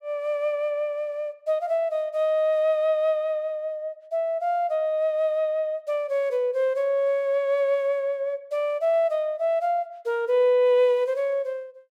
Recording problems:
none

